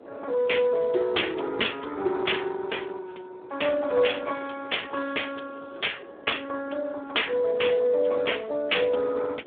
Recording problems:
phone line; 300 Hz to 3.6 kHz, Speex
wind on the microphone; below 610 Hz, SNR 21 dB

